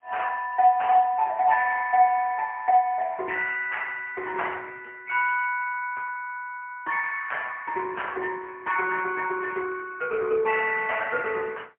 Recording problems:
phone line; 320 Hz to 3.1 kHz, AMR-NB, then MP3

